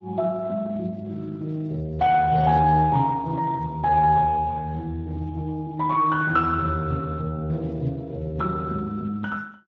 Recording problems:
lossy codec; Speex, log-spectral distance 2 dB

